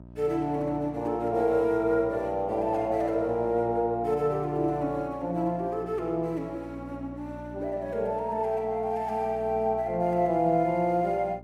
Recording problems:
mains hum; 60 Hz, harmonics up to 1 kHz, SNR 18 dB

